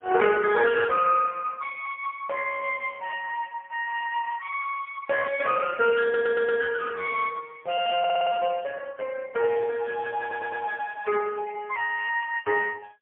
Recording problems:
phone line; 130 Hz to 3.1 kHz, AMR-NB, then MP3
audio stuttering; at 6 s, at 8 s and at 10 s

